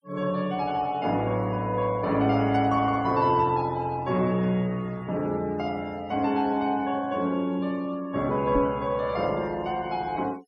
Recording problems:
noise reduction artefacts; signal-to-artefact ratio 25 dB
knock on the microphone; at 8.5 s; peak +3 dB vs average level

